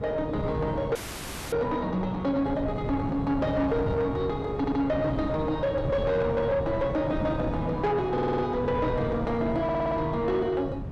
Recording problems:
distortion; soft clipping, signal-to-distortion ratio 12 dB
wind noise; below 280 Hz, SNR 6 dB
frozen audio; at 1 s for 0.5 s
audio stuttering; at 4.5 s, at 8 s and at 9.5 s

